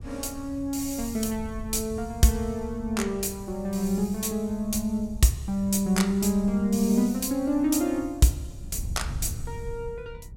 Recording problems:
wind noise; below 110 Hz, SNR 14 dB

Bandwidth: 16.5 kHz